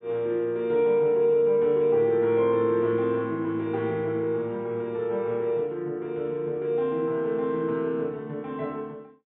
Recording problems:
treble missing; nothing above 4 kHz

